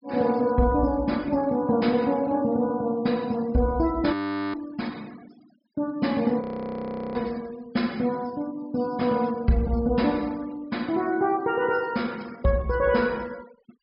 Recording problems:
treble missing; nothing above 5.5 kHz
noise reduction artefacts; signal-to-artefact ratio 25 dB
frozen audio; at 4 s and at 6.5 s for 0.5 s

